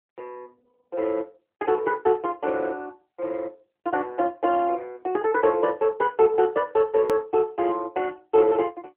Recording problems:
telephone audio; 280 Hz to 3.1 kHz, AMR-NB
edit click; at 7 s

